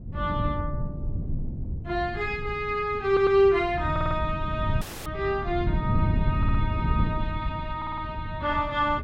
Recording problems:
wind noise; below 150 Hz, SNR 4 dB
stutter; 4 times, first at 3 s
dropout; at 5 s

